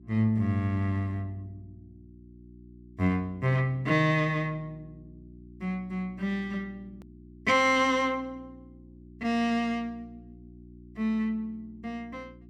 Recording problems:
hum; 60 Hz, harmonics up to 360 Hz, SNR 22 dB
edit click; at 7 s

